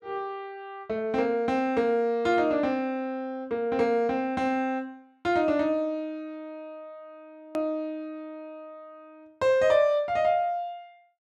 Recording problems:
click at an edit; at 7.5 s

